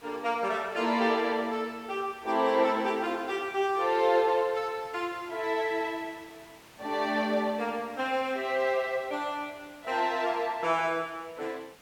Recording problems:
hiss; slope -3 dB per octave, SNR 24 dB

